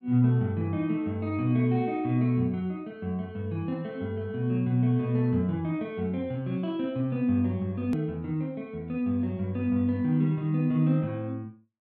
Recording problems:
edit click; at 8 s

